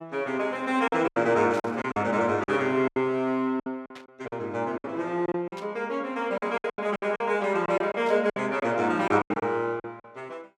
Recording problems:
lost packets; 12% of the sound replaced, filled with silence
static burst; 4 times, first at 1.5 s; peak -13 dB vs average level

